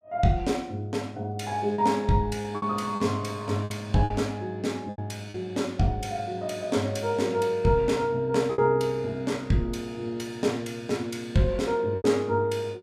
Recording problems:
lost packets; 4% of the sound replaced, filled with repeated pitch periods

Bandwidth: 15.5 kHz